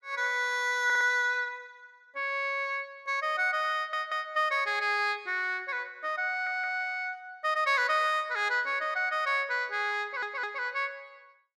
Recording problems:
audio stuttering; 4 times, first at 1 s

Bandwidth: 14 kHz